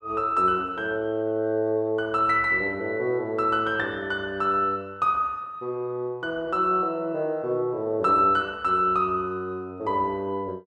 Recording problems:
none

